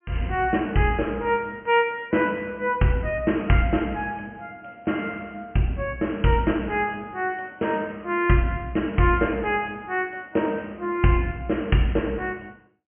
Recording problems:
low-pass filter; nothing above 3.1 kHz

